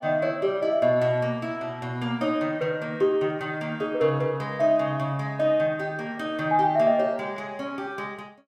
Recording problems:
none

